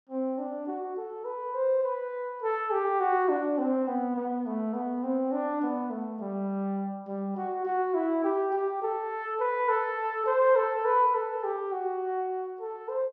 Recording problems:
none

